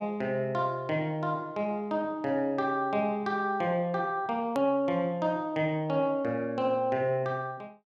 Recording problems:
hard cut with a click; at 4.5 s

